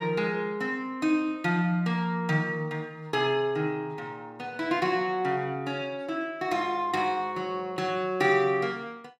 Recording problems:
none

